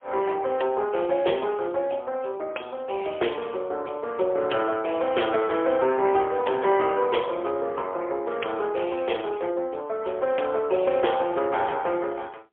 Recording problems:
telephone audio; 320 Hz to 3.3 kHz, AMR-NB, then MP3

